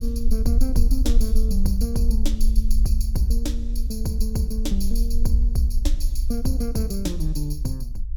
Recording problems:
rumble; below 48 Hz, strongest tone 18 Hz, SNR -3 dB

